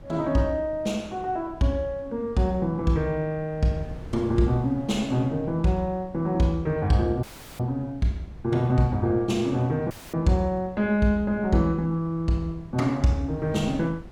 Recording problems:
wind noise; below 220 Hz, SNR 20 dB
audio cutting out; at 7 s and at 10 s

